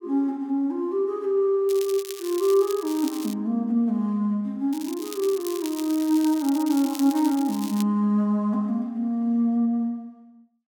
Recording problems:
crackling; from 1.5 to 3.5 s and from 4.5 to 8 s; loose cable, SNR 15 dB

